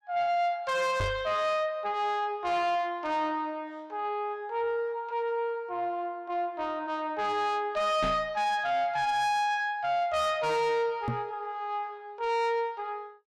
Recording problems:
distortion; soft clipping, signal-to-distortion ratio 10 dB
microphone thump; at 1 s, at 8 s and at 11 s; peak +1 dB vs average level

